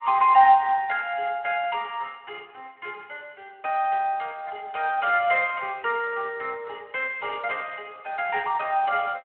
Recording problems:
telephone audio; 300 Hz to 3.5 kHz, Speex

